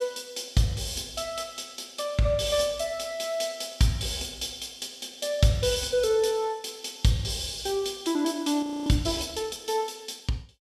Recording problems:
audio freezing; at 8.5 s

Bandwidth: 14 kHz